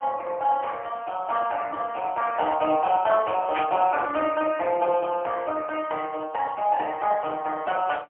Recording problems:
phone line; 260 Hz to 2.6 kHz, AMR-NB, then MP3
static burst; at 3.5 s; peak -3 dB vs average level

